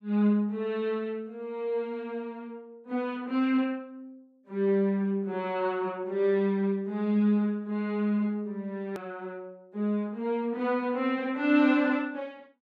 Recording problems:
hard cut with a click; at 9 s

